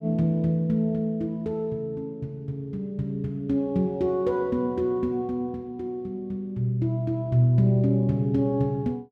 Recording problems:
none

